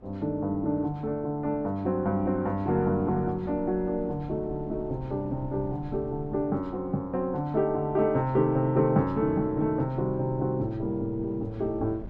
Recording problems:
wind noise; below 230 Hz, SNR 18 dB

